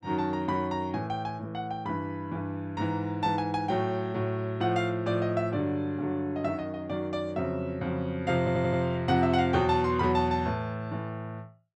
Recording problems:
audio stuttering; at 8.5 s

